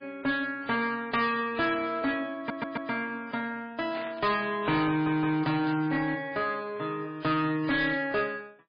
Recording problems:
lossy compression; MP3, log-spectral distance 3 dB
distorted audio; hard clipping, uneven, signal-to-distortion ratio 10 dB
audio stuttering; at 2.5 s and at 5 s
static burst; at 4 s, at 5.5 s and at 7.5 s; peak -9 dB vs average level

